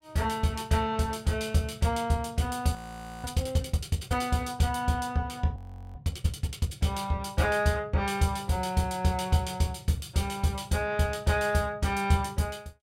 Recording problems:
frozen audio; at 3 s and at 5.5 s

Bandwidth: 16.5 kHz